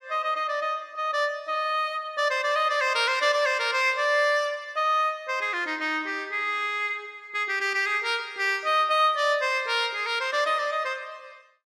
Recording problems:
none

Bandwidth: 14.5 kHz